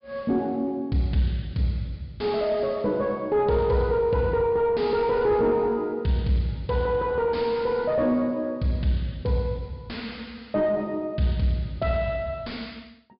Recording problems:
low-pass filter; nothing above 5.1 kHz
distorted audio; soft clipping, signal-to-distortion ratio 11 dB

